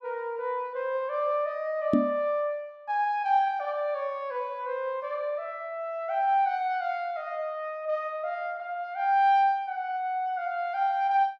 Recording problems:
microphone bump; at 2 s; peak +8 dB vs average level

